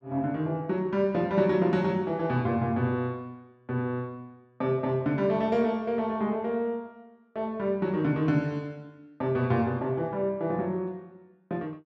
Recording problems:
none

